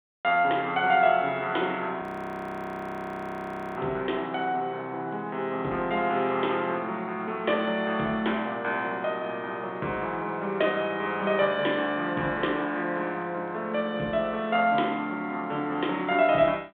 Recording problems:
phone line; 170 Hz to 3.7 kHz, G.726
audio freezing; at 2 s for 2 s

